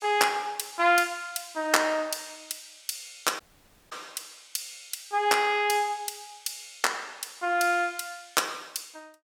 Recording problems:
audio cutting out; at 3.5 s for 0.5 s

